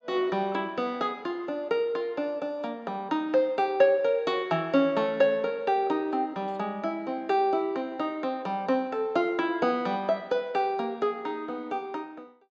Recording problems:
treble missing; nothing above 8 kHz

